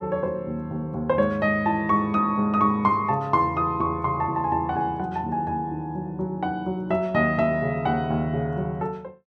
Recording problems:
none

